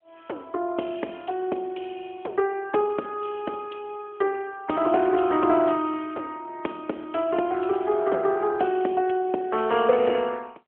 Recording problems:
phone line; 280 Hz to 3.3 kHz, AMR-NB

